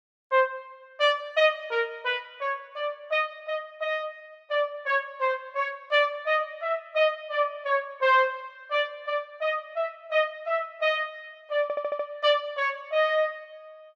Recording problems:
audio stuttering; at 12 s

